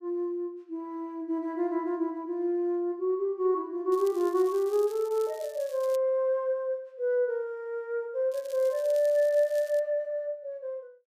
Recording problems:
crackling; from 4 to 6 s and from 8.5 to 10 s; loose cable, SNR 22 dB

